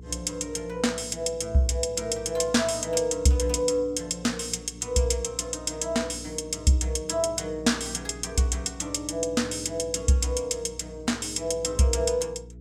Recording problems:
mains hum; 60 Hz, harmonics up to 480 Hz, SNR 19 dB

